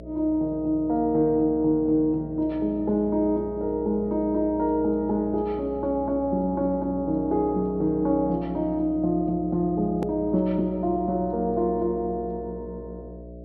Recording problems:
treble cut off; nothing above 5.5 kHz
hum; 60 Hz, harmonics up to 660 Hz, SNR 15 dB
click at an edit; at 10 s

